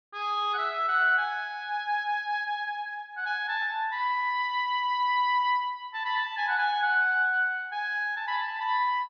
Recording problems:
low-pass filter; nothing above 6.1 kHz

